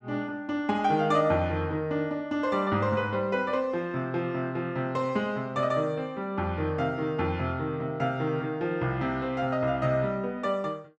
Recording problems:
none

